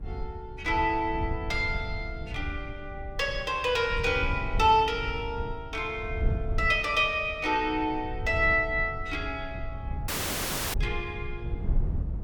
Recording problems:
wind on the microphone; below 90 Hz, SNR 9 dB
audio cutting out; at 10 s for 0.5 s

